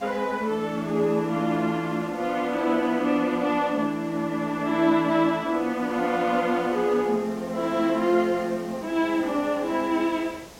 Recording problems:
background hiss; SNR 22 dB

